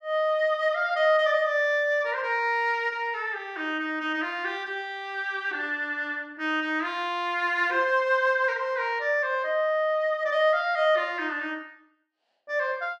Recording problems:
none

